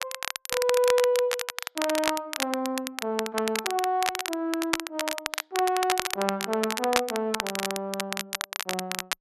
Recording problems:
crackling; vinyl, SNR 3 dB

